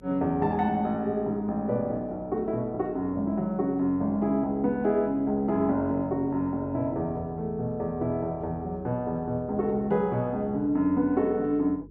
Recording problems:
hum; 50 Hz, harmonics up to 450 Hz, SNR 23 dB

